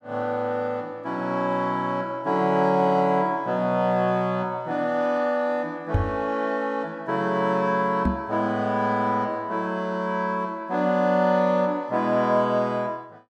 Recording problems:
microphone bump; at 6 s and at 8 s; peak +4 dB vs average level

